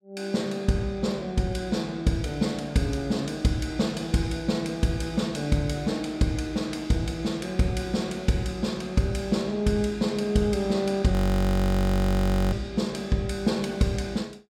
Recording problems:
frozen audio; at 11 s for 1.5 s

